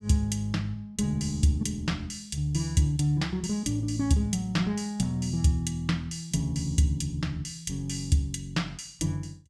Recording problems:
none

